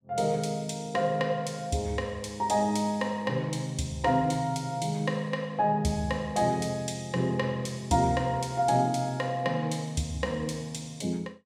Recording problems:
none

